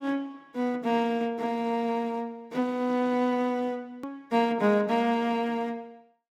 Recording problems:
hard cut with a click; at 4 s

